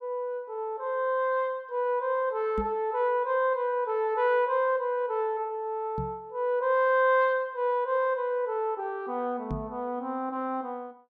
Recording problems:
microphone bump; at 2.5 s, at 6 s and at 9.5 s; peak -2 dB vs average level

